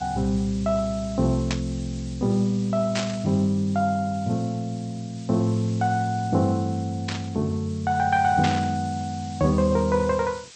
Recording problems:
codec artefacts; MP2, log-spectral distance 5 dB
hiss; slope +3 dB per octave, SNR 20 dB
static burst; 4 times, first at 1.5 s; peak 0 dB vs average level

